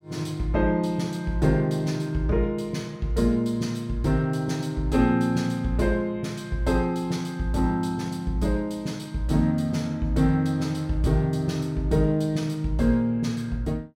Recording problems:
none

